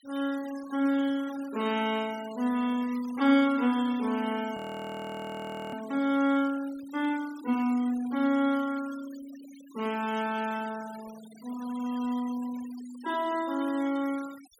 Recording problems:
denoising artefacts; signal-to-artefact ratio 19 dB
frozen audio; at 4.5 s for 1 s

